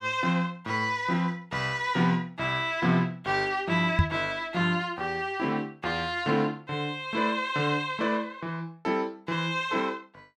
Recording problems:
microphone thump; at 4 s; peak +8 dB vs average level

